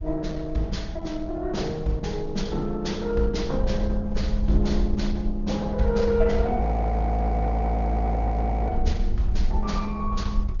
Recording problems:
treble cut off; nothing above 6.7 kHz
codec artefacts; Opus, log-spectral distance 2 dB
rumble; below 62 Hz, SNR 2 dB
audio freezing; at 6.5 s for 2 s

